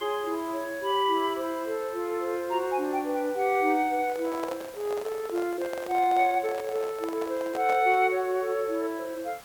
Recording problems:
hiss; slope -2 dB per octave, SNR 20 dB
microphone handling noise; from 4 to 8 s; peak -4 dB vs average level

